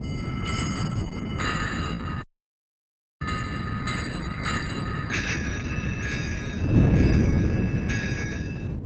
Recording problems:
lossy codec; Opus, log-spectral distance 5 dB, nothing above 8 kHz
wind noise; below 250 Hz, SNR -6 dB
frozen audio; at 2 s for 1 s

